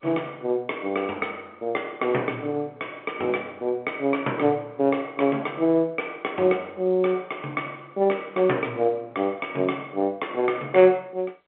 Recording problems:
phone line; 260 Hz to 3.3 kHz, G.711

